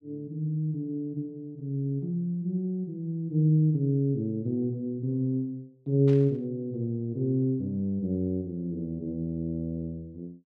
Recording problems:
static burst; at 6 s; peak -14 dB vs average level

